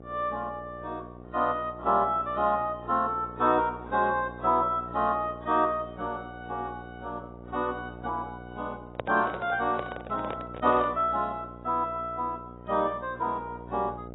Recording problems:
lossy codec; AAC, log-spectral distance 2 dB, nothing above 3.7 kHz
hum; 60 Hz, harmonics up to 900 Hz, SNR 16 dB
microphone handling noise; from 9 to 11 s; peak 0 dB vs average level

